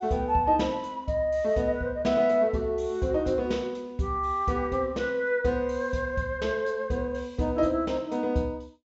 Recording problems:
treble missing; nothing above 8 kHz

